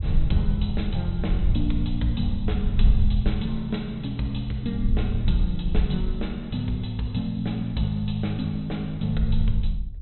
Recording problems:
treble missing; nothing above 4.1 kHz
wind on the microphone; below 62 Hz, SNR 0 dB

